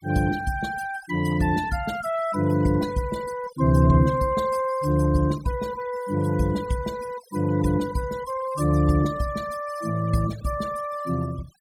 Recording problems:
noise reduction artefacts; signal-to-artefact ratio 16 dB

